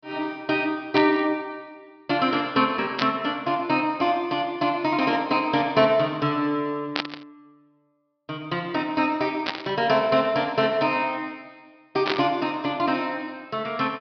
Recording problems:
treble cut off; nothing above 5.5 kHz
static burst; 5 times, first at 1 s; peak +2 dB vs average level

